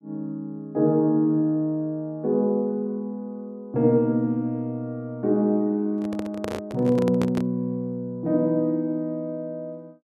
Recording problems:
microphone handling noise; from 6 to 7.5 s; peak -1 dB vs average level

